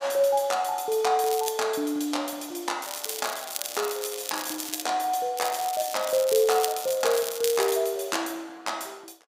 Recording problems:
crackling; at 1 s, from 3 to 5 s and from 5.5 to 7.5 s; loose cable, SNR 8 dB

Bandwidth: 15.5 kHz